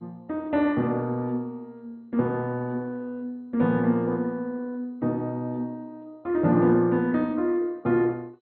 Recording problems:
lossy compression; MP2, then MP2, log-spectral distance 2 dB, nothing above 4 kHz

